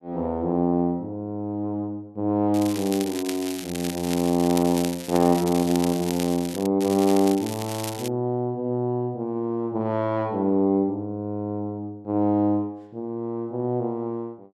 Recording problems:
crackling; from 2.5 to 6.5 s and from 7 to 8 s; loose cable, SNR 11 dB

